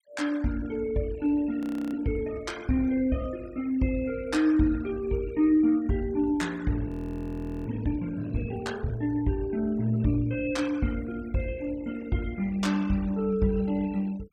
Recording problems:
noise reduction artefacts; signal-to-artefact ratio 22 dB
audio freezing; at 1.5 s and at 7 s for 1 s

